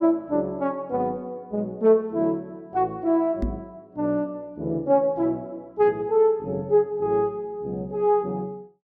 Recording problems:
microphone bump; at 3.5 s; peak 0 dB vs average level

